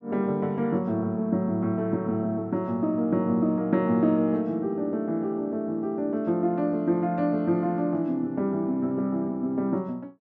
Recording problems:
none

